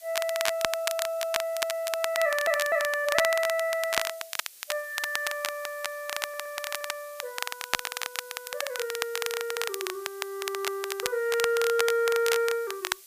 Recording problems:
background hiss; SNR 18 dB
crackling; vinyl, SNR 4 dB
stutter; at 2 s and at 6 s

